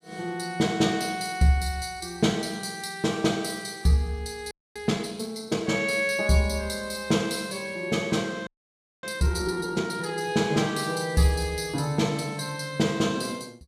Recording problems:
audio freezing; at 4.5 s and at 8.5 s for 0.5 s

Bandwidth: 14.5 kHz